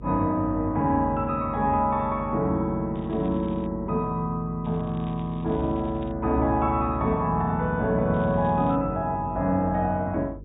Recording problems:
low-pass filter; nothing above 4 kHz
hum; 50 Hz, harmonics up to 500 Hz, SNR 16 dB
crackle; at 3 s, from 4.5 to 6 s and at 8 s; loose cable, SNR 29 dB

